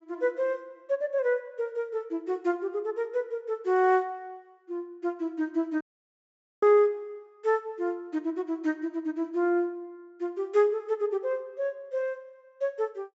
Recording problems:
low-pass filter; nothing above 8 kHz
dropout; at 6 s for 1 s

